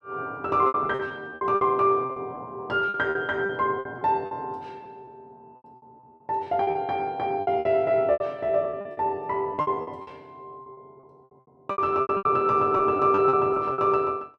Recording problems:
packet loss; 15% of the sound replaced, filled with repeated pitch periods

